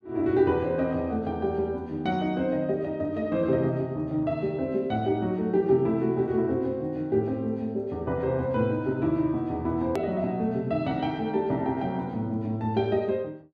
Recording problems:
click at an edit; at 10 s

